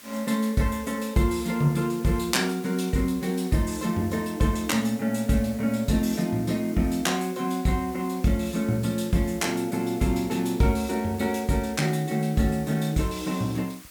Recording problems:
hiss; slope 0 dB per octave, SNR 20 dB

